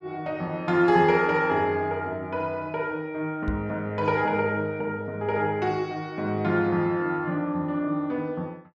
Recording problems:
microphone bump; at 3.5 s; peak 0 dB vs average level

